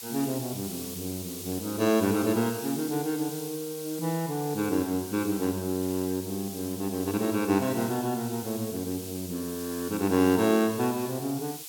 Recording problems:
hiss; SNR 10 dB

